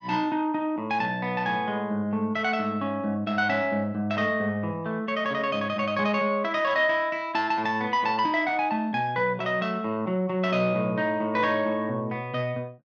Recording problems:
none

